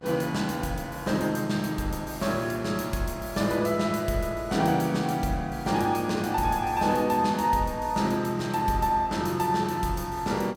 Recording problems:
electrical hum; 60 Hz, harmonics up to 1.9 kHz, SNR 25 dB

